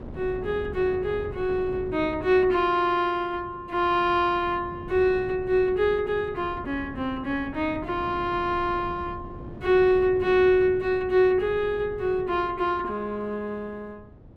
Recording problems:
wind on the microphone; below 310 Hz, SNR 16 dB

